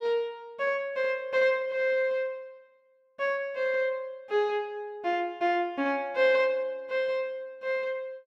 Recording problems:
none

